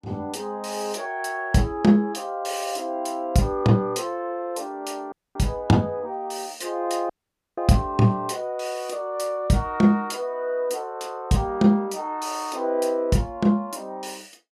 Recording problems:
dropout; at 5 s and at 7 s

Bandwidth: 15 kHz